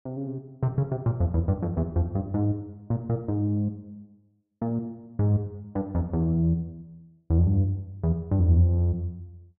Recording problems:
none

